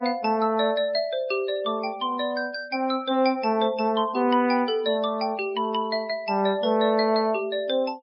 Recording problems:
low-pass filter; nothing above 5.5 kHz
denoising artefacts; signal-to-artefact ratio 26 dB

